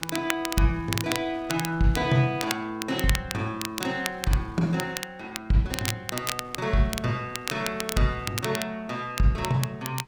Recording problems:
wind noise; below 1.4 kHz, SNR 25 dB
crackling; vinyl, SNR 7 dB

